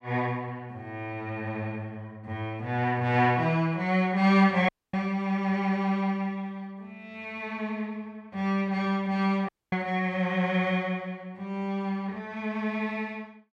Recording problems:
audio cutting out; at 4.5 s and at 9.5 s

